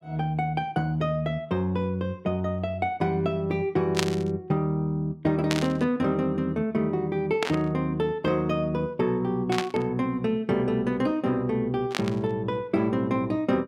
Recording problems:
static burst; 5 times, first at 4 s; peak +5 dB vs average level

